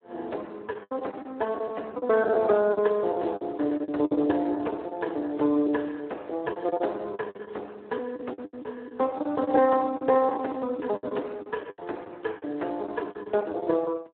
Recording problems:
telephone audio; 240 Hz to 3.1 kHz, Speex
lost packets; 14% of the sound replaced, filled with the last packet

